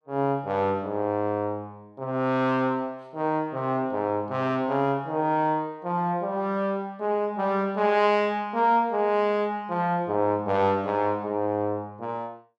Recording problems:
none

